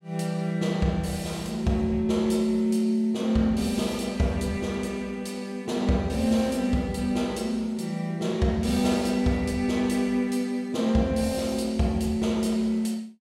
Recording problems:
none

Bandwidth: 16.5 kHz